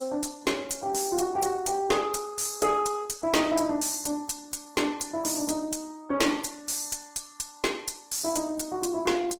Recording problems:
lossy codec; Opus, log-spectral distance 6 dB, nothing above 18.5 kHz
distortion; soft clipping, signal-to-distortion ratio 11 dB

